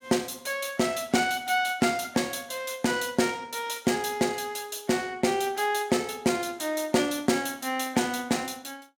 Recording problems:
none

